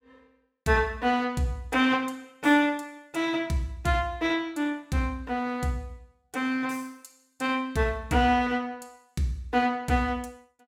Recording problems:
none

